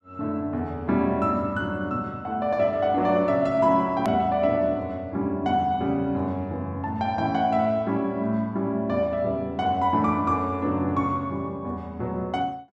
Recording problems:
edit click; at 4 s

